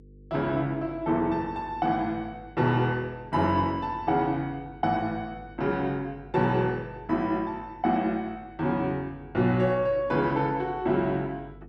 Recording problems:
hum; 50 Hz, harmonics up to 500 Hz, SNR 22 dB

